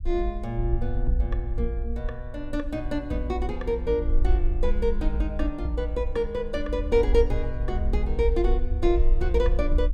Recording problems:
rumble; below 54 Hz, SNR 2 dB

